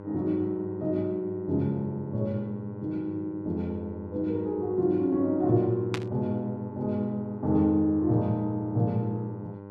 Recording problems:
electrical hum; 50 Hz, harmonics up to 1.5 kHz, SNR 13 dB
burst of static; at 6 s; peak -1 dB vs average level

